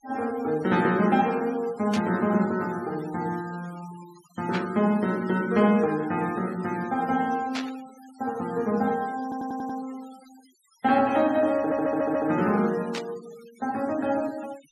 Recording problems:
denoising artefacts; signal-to-artefact ratio 21 dB
burst of static; 4 times, first at 2 s; peak -3 dB vs average level
audio stuttering; at 9 s and at 12 s

